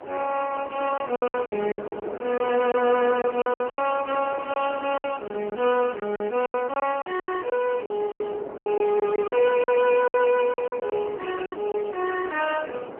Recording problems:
phone line; 320 Hz to 2.9 kHz, AMR-NB
wind on the microphone; below 720 Hz, SNR 13 dB
packet loss; 13% of the sound replaced, filled with silence

